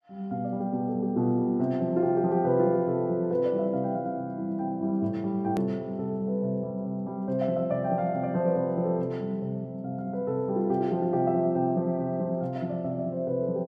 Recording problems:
hard cut with a click; at 5.5 s

